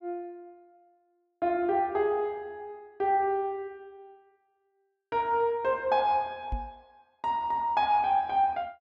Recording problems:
microphone bump; at 6.5 s; peak -2 dB vs average level

